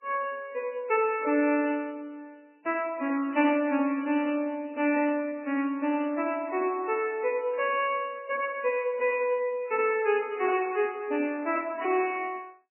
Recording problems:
lossy codec; MP3, log-spectral distance 3 dB, nothing above 2.7 kHz

